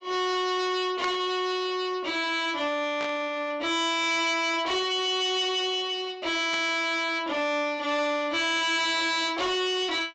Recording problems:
treble cut off; nothing above 8 kHz
distorted audio; soft clipping, signal-to-distortion ratio 10 dB
static burst; at 1 s, at 3 s and at 6.5 s; peak -6 dB vs average level

